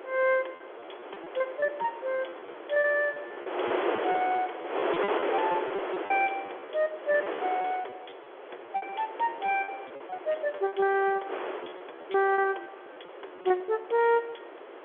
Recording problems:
phone line; 300 Hz to 3.6 kHz, G.711
wind noise; below 1.1 kHz, SNR 6 dB
packet loss; 15% of the sound replaced, filled with repeated pitch periods

